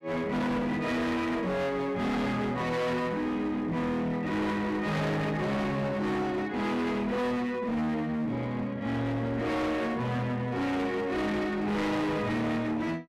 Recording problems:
distorted audio; hard clipping, uneven, signal-to-distortion ratio 6 dB

